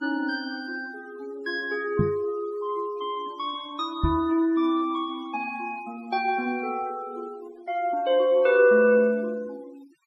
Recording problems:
denoising artefacts; signal-to-artefact ratio 23 dB
microphone bump; at 2 s and at 4 s; peak +6 dB vs average level

